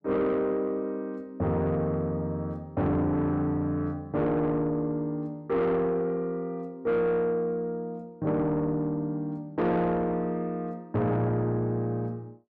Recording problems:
distorted audio; soft clipping, signal-to-distortion ratio 11 dB

